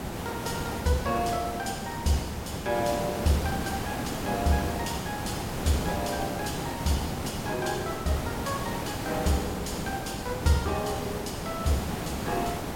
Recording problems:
background hiss; slope -6 dB per octave, SNR 2 dB

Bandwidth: 16.5 kHz